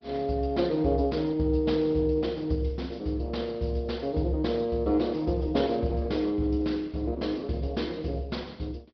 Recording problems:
treble missing; nothing above 5.3 kHz
codec artefacts; Opus, log-spectral distance 3 dB

